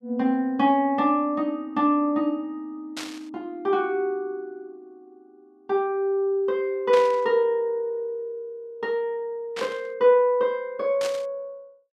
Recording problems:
burst of static; 4 times, first at 3 s; peak -5 dB vs average level

